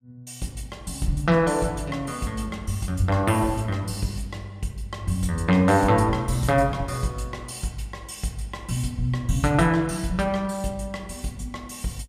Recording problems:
none

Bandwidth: 15.5 kHz